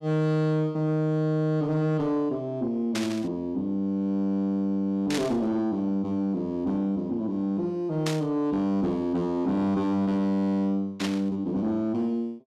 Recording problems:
distortion; soft clipping, signal-to-distortion ratio 11 dB
burst of static; 4 times, first at 3 s; peak -1 dB vs average level

